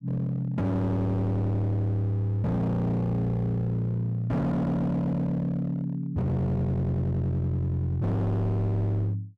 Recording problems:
distorted audio; hard clipping, signal-to-distortion ratio 7 dB

